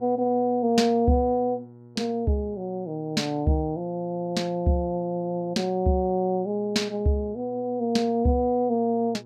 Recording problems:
hum; 60 Hz, harmonics up to 960 Hz, SNR 24 dB

